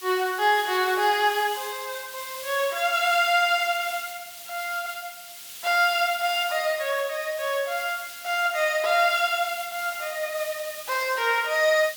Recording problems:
background hiss; SNR 13 dB

